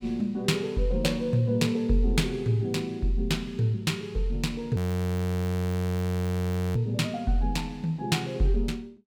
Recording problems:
audio freezing; at 5 s for 2 s

